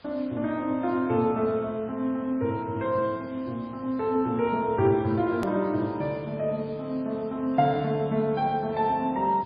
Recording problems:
lossy compression; MP3, log-spectral distance 3 dB, nothing above 13.1 kHz
background hiss; SNR 27 dB
click at an edit; at 5.5 s

